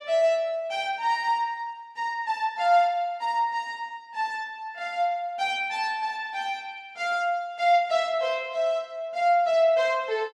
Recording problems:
none

